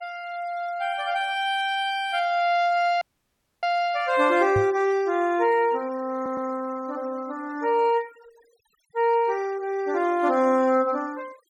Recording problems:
noise reduction artefacts; signal-to-artefact ratio 24 dB
dropout; at 3 s for 0.5 s
microphone bump; at 4.5 s; peak -1 dB vs average level
audio stuttering; at 6 s

